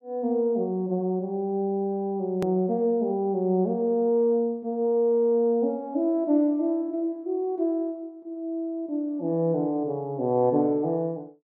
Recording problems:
click at an edit; at 2.5 s

